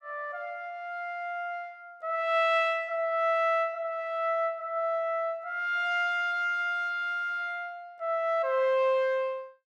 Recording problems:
none

